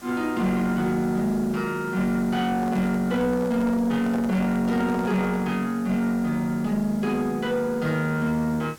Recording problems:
distorted audio; soft clipping, signal-to-distortion ratio 11 dB
hiss; slope -3 dB per octave, SNR 22 dB
microphone handling noise; from 2.5 to 5.5 s; peak -5 dB vs average level

